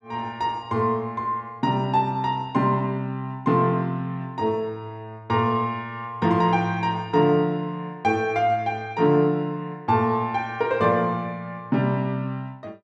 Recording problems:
none

